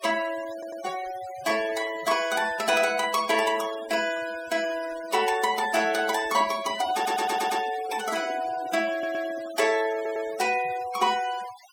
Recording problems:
denoising artefacts; signal-to-artefact ratio 14 dB
stutter; 4 times, first at 0.5 s
handling noise; from 6.5 to 9.5 s; peak -10 dB vs average level

